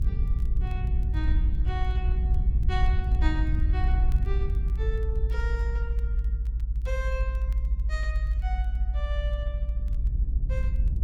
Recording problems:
low-frequency rumble; below 58 Hz, SNR -11 dB
crackling; vinyl, SNR 26 dB

